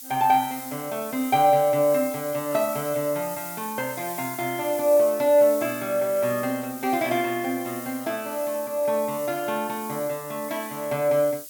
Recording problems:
hiss; SNR 12 dB

